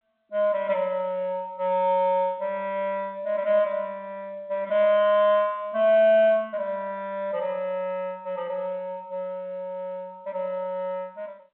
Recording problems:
phone line; 260 Hz to 3.7 kHz, G.711

